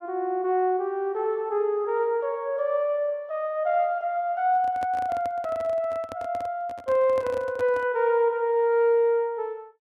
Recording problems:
microphone handling noise; from 4.5 to 8 s; peak -10 dB vs average level

